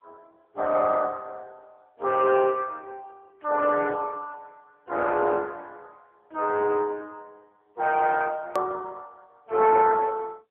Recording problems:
phone line; 340 Hz to 3.5 kHz, AMR-NB
hard cut with a click; at 8.5 s

